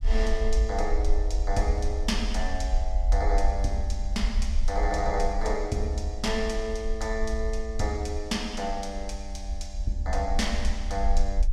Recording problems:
rumble; below 52 Hz, SNR 0 dB

